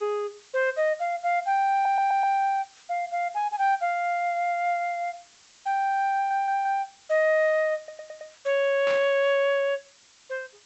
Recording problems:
treble cut off; nothing above 7.9 kHz
background hiss; slope +2 dB per octave, SNR 28 dB
audio stuttering; at 1.5 s, at 6 s and at 8 s
static burst; at 9 s; peak -7 dB vs average level

